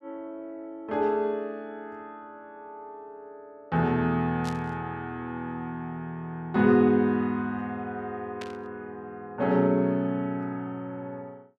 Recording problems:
burst of static; at 4.5 s and at 8.5 s; peak -8 dB vs average level

